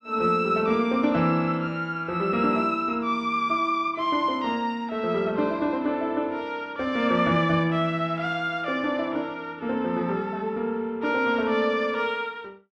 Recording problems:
none

